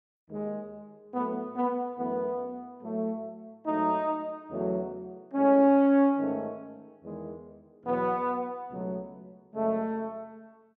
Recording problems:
none

